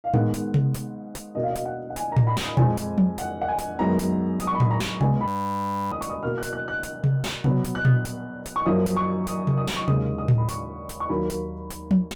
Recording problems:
distorted audio; soft clipping, signal-to-distortion ratio 5 dB
audio freezing; at 5.5 s for 0.5 s

